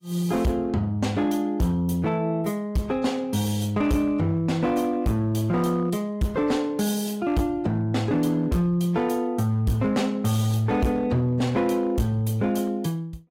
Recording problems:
lossy compression; AAC, log-spectral distance 2 dB, nothing above 15.5 kHz
distortion; hard clipping, signal-to-distortion ratio 11 dB

